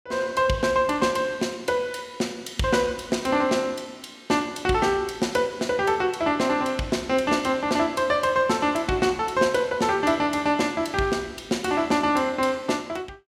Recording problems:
none

